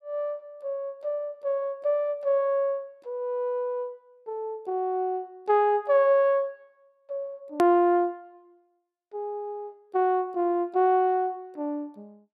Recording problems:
hard cut with a click; at 7.5 s

